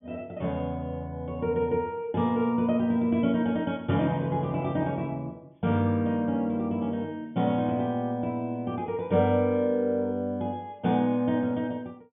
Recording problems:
treble missing; nothing above 3.5 kHz

